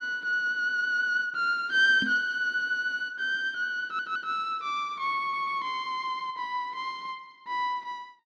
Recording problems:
knock on the microphone; at 2 s; peak -3 dB vs average level
audio stuttering; at 4 s and at 5 s

